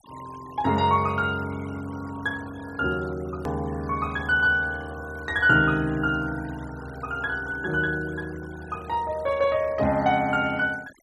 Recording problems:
noise reduction artefacts; signal-to-artefact ratio 22 dB
hard cut with a click; at 3.5 s

